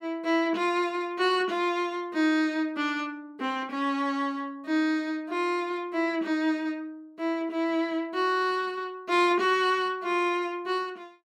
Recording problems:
none

